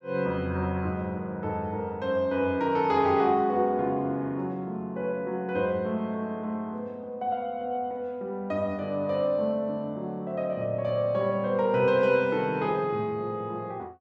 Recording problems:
none

